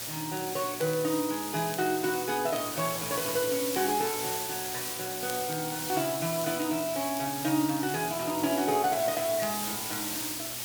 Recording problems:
hum; 60 Hz, harmonics up to 1.9 kHz, SNR 22 dB
hiss; slope 0 dB per octave, SNR 3 dB
crackle; vinyl, SNR 21 dB

